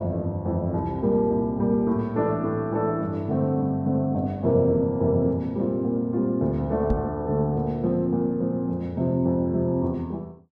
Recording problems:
knock on the microphone; at 7 s; peak +1 dB vs average level

